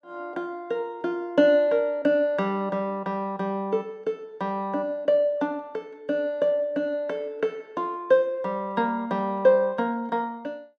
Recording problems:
none

